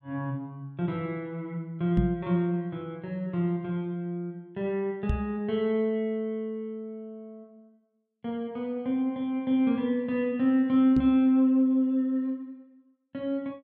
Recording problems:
microphone bump; at 2 s, at 5 s and at 11 s; peak +5 dB vs average level

